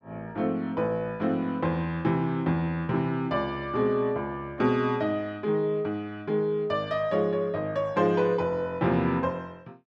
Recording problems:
none

